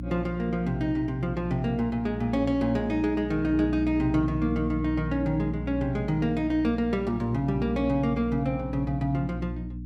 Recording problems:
hum; 60 Hz, harmonics up to 300 Hz, SNR 8 dB

